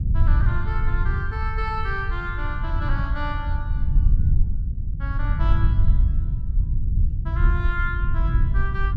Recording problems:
low-frequency rumble; below 82 Hz, SNR -7 dB

